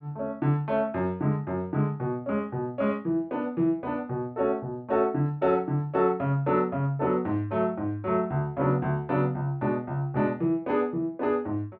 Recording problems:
none

